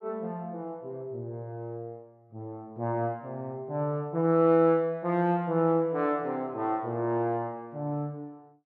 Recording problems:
none

